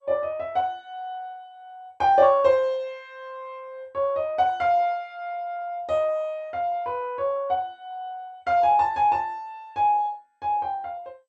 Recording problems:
codec artefacts; MP2, log-spectral distance 2 dB

